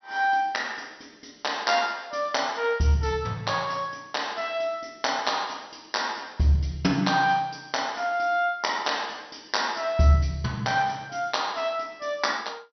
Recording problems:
treble missing; nothing above 5.9 kHz

